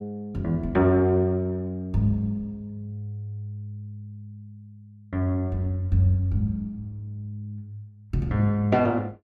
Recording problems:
none

